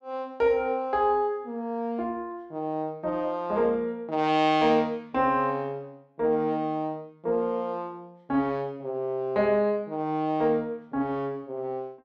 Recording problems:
none

